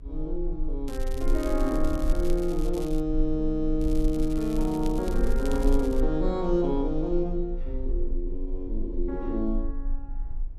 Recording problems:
rumble; below 34 Hz, strongest tone 24 Hz, SNR 4 dB
crackle; from 1 to 3 s and from 4 to 6 s; loose cable, SNR 18 dB

